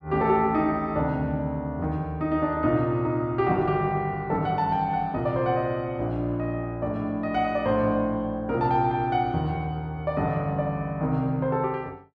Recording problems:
none

